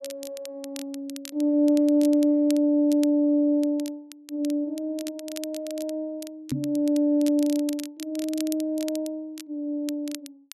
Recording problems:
crackle; vinyl, SNR 18 dB
microphone thump; at 6.5 s; peak 0 dB vs average level

